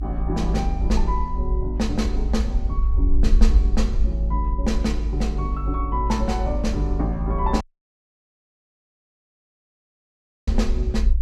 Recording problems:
rumble; below 54 Hz, SNR -2 dB
dropout; at 7.5 s for 3 s

